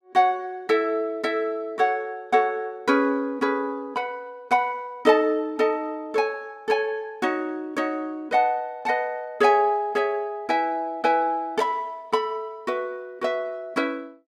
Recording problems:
none

